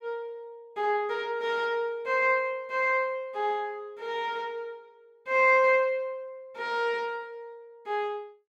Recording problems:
none

